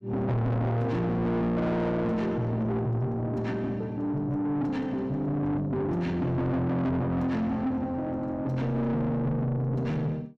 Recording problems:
distorted audio; soft clipping, signal-to-distortion ratio 7 dB

